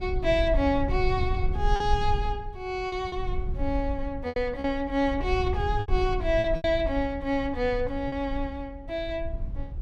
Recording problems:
rumble; below 68 Hz, SNR 5 dB
lost packets; 5% of the sound replaced, filled with repeated pitch periods

